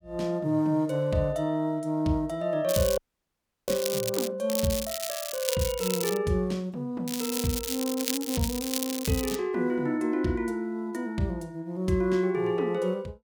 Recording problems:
crackle; from 2.5 to 4.5 s, from 4.5 to 6 s and from 7 to 9.5 s; loose cable, SNR 4 dB
dropout; at 3 s for 0.5 s

